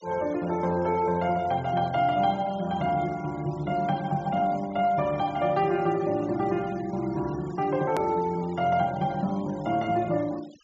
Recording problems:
treble cut off; nothing above 8 kHz
noise reduction artefacts; signal-to-artefact ratio 22 dB
click at an edit; at 8 s

